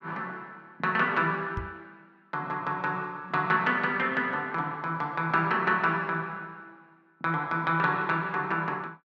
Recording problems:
microphone thump; at 1.5 s; peak -4 dB vs average level

